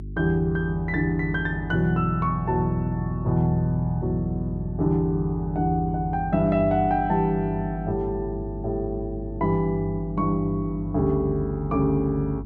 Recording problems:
hum; 50 Hz, harmonics up to 400 Hz, SNR 11 dB

